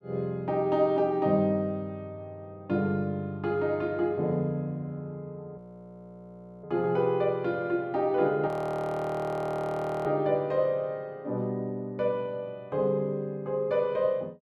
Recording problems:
audio freezing; at 5.5 s for 1 s and at 8.5 s for 1.5 s

